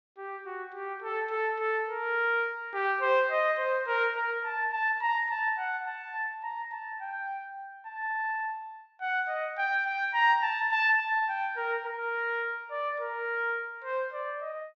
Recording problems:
treble missing; nothing above 8 kHz

